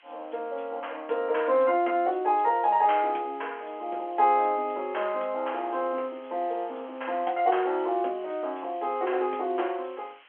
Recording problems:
phone line; 280 Hz to 3.3 kHz, G.711
background hiss; SNR 28 dB

